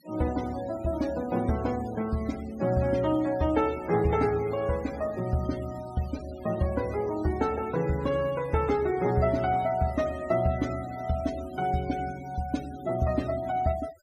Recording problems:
denoising artefacts; signal-to-artefact ratio 19 dB

